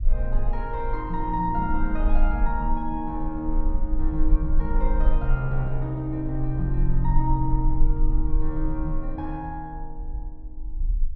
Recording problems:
rumble; below 38 Hz, strongest tone 22 Hz, SNR 0 dB

